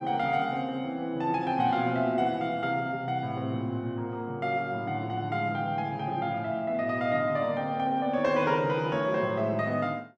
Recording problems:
none

